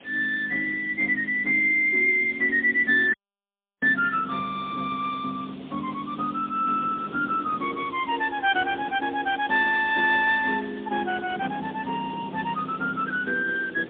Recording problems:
telephone audio; 220 Hz to 3.7 kHz, AMR-NB, then MP3
background hiss; SNR 24 dB
wind noise; below 520 Hz, SNR 20 dB
dropout; at 3 s for 0.5 s

